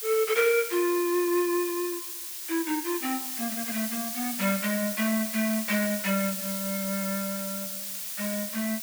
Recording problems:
background hiss; slope +4 dB per octave, SNR 4 dB

